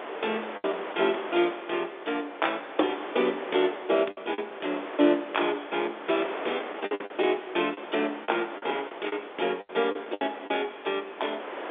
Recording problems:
telephone audio; 300 Hz to 3.6 kHz, G.711
wind noise; below 1.6 kHz, SNR 10 dB
packet loss; 7% of the sound replaced, filled with the last packet

